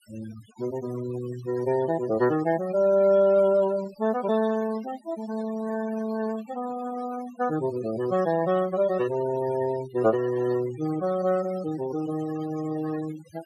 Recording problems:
denoising artefacts; signal-to-artefact ratio 16 dB

